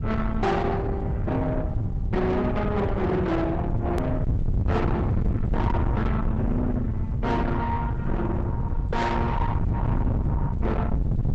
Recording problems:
lossy codec; Opus, log-spectral distance 2 dB, nothing above 13.1 kHz
distorted audio; soft clipping, signal-to-distortion ratio 6 dB
low-frequency rumble; below 190 Hz, SNR 0 dB
hard cut with a click; at 4 s

